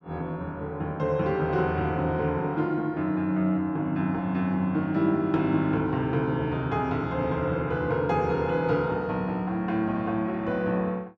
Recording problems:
none

